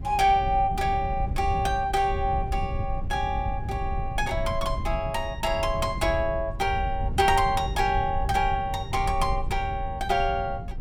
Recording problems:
wind noise; below 100 Hz, SNR 7 dB

